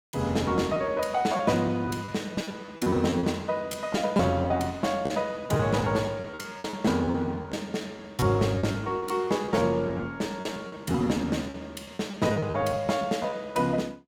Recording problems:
lost packets; 14% of the sound replaced, filled with repeated pitch periods

